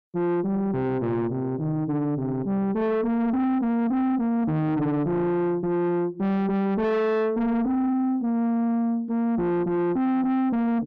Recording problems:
distortion; soft clipping, signal-to-distortion ratio 7 dB

